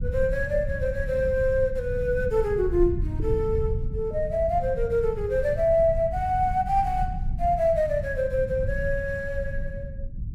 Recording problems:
rumble; below 98 Hz, SNR 8 dB

